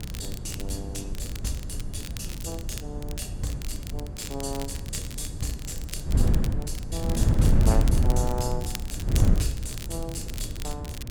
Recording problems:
hum; 60 Hz, harmonics up to 960 Hz, SNR 19 dB
wind on the microphone; below 120 Hz, SNR -6 dB
crackling; vinyl, SNR 7 dB

